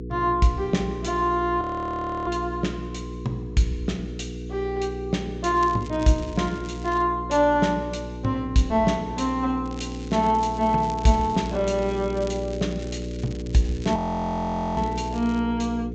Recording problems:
low-pass filter; nothing above 8 kHz
electrical hum; 60 Hz, harmonics up to 480 Hz, SNR 9 dB
frozen audio; at 1.5 s for 0.5 s and at 14 s for 1 s
crackling; from 5.5 to 7 s and from 9.5 to 15 s; loose cable, SNR 22 dB

